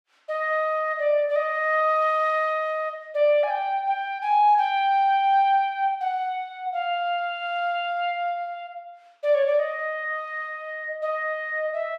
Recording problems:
none

